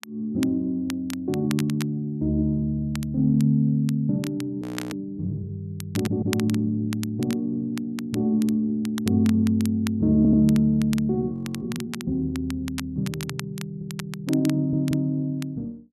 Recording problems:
crackling; vinyl, SNR 16 dB
frozen audio; at 4.5 s and at 11 s
stutter; 4 times, first at 6 s

